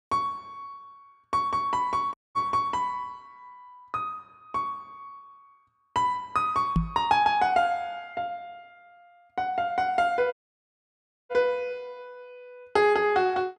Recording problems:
audio cutting out; at 2 s and at 10 s for 1 s
knock on the microphone; at 7 s; peak +6 dB vs average level

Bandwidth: 12 kHz